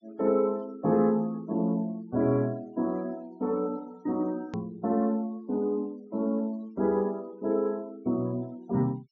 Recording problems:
treble cut off; nothing above 7.3 kHz
noise reduction artefacts; signal-to-artefact ratio 27 dB
click at an edit; at 4.5 s

